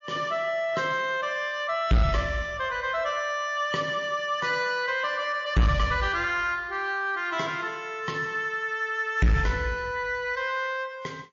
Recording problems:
codec artefacts; MP3, log-spectral distance 2 dB, nothing above 6.5 kHz
distorted audio; soft clipping, signal-to-distortion ratio 6 dB

